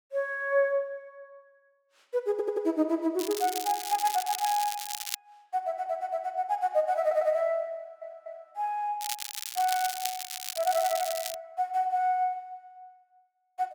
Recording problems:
stutter; 4 times, first at 2.5 s
crackling; from 3 to 5 s and from 9 to 11 s; loose cable, SNR 6 dB

